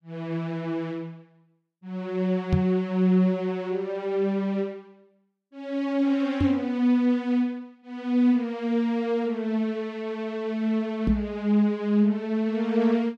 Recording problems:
microphone bump; at 2.5 s, at 6.5 s and at 11 s; peak +6 dB vs average level

